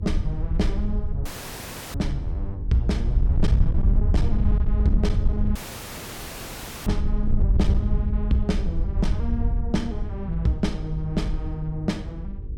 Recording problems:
distortion; hard clipping, signal-to-distortion ratio 12 dB
hum; 50 Hz, harmonics up to 500 Hz, SNR 12 dB
wind noise; below 76 Hz, SNR -3 dB
dropout; at 1.5 s for 0.5 s and at 5.5 s for 1.5 s

